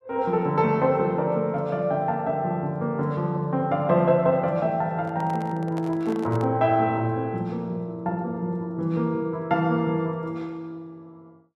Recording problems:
handling noise; from 5 to 6.5 s; peak -9 dB vs average level

